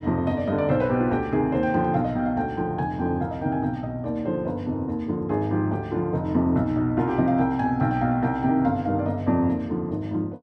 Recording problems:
none

